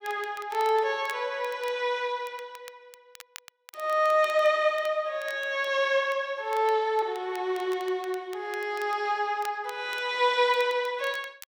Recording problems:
crackling; vinyl, SNR 22 dB

